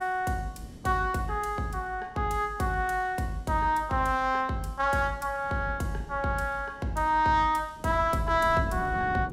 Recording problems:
wind noise; below 270 Hz, SNR 15 dB

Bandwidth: 16 kHz